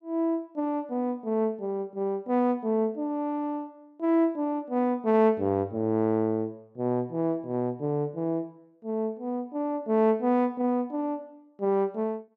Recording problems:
none

